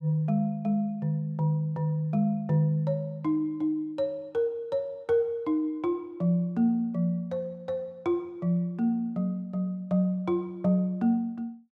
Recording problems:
none

